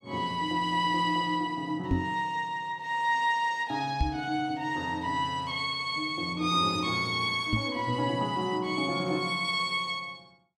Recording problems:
microphone thump; at 2 s, at 4 s and at 7.5 s; peak +5 dB vs average level

